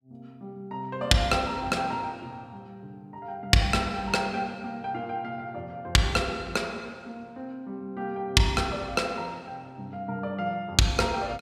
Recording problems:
none

